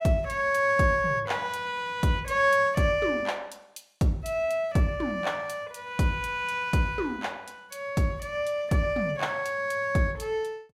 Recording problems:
none

